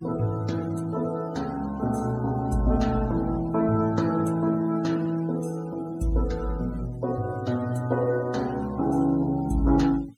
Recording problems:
denoising artefacts; signal-to-artefact ratio 22 dB

